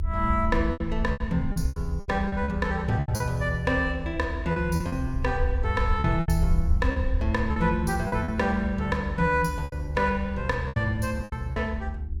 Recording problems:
hum; 50 Hz, harmonics up to 400 Hz, SNR 19 dB
low-frequency rumble; below 76 Hz, SNR 4 dB
packet loss; 10% of the sound replaced, filled with repeated pitch periods

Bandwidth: 17.5 kHz